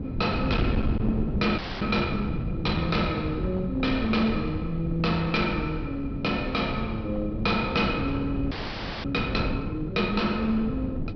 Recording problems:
treble cut off; nothing above 5.5 kHz
distortion; hard clipping, uneven, signal-to-distortion ratio 11 dB
wind noise; below 230 Hz, SNR 5 dB
audio freezing; at 1.5 s and at 8.5 s for 0.5 s

